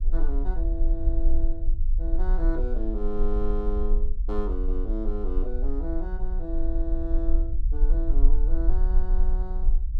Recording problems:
low-frequency rumble; below 38 Hz, strongest tone 20 Hz, SNR -7 dB

